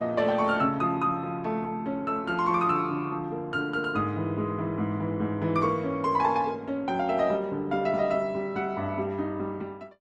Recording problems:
codec artefacts; Opus, log-spectral distance 2 dB

